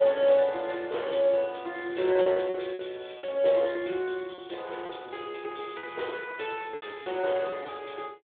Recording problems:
phone line; 300 Hz to 3.7 kHz, Speex
packet loss; 9% of the sound replaced, filled with repeated pitch periods

